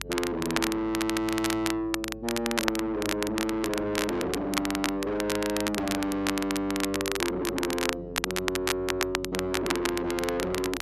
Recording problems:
distorted audio; soft clipping, signal-to-distortion ratio 6 dB
hum; 50 Hz, harmonics up to 400 Hz, SNR 18 dB
crackling; vinyl, SNR 3 dB

